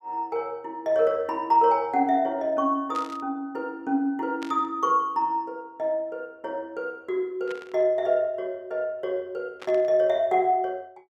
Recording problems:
static burst; 4 times, first at 3 s; peak -10 dB vs average level

